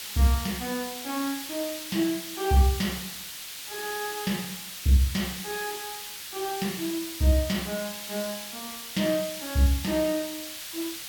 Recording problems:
hiss; slope +3 dB per octave, SNR 7 dB

